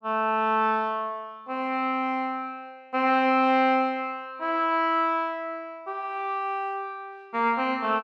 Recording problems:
none

